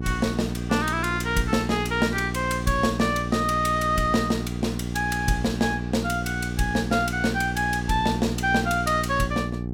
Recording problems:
hum; 60 Hz, harmonics up to 780 Hz, SNR 6 dB

